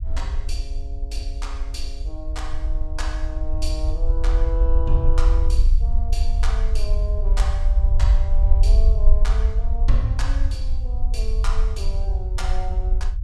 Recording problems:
low-frequency rumble; below 54 Hz, SNR -11 dB

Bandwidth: 14 kHz